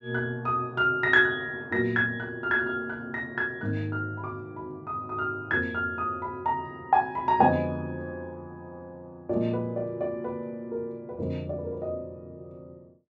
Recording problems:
low-pass filter; nothing above 8 kHz

